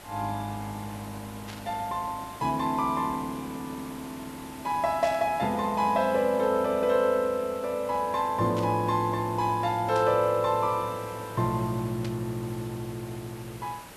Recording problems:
background hiss; slope -4 dB per octave, SNR 17 dB
burst of static; 5 times, first at 1.5 s; peak -9 dB vs average level

